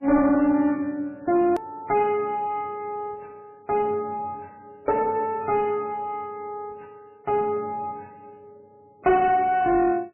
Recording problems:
lossy compression; MP3, log-spectral distance 2 dB, nothing above 13.1 kHz
distorted audio; soft clipping, signal-to-distortion ratio 10 dB
edit click; at 1.5 s

